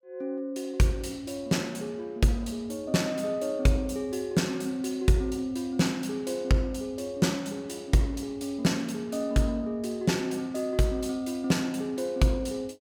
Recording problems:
none

